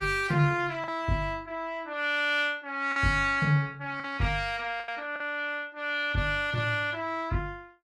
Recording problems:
lossy codec; Opus, log-spectral distance 2 dB, nothing above 17.7 kHz
lost packets; 3% of the sound replaced, filled with the last packet

